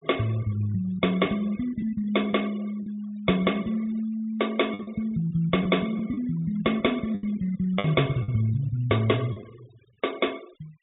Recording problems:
treble missing; nothing above 4 kHz
noise reduction artefacts; signal-to-artefact ratio 22 dB
lost packets; 4% of the sound replaced, filled with the last packet

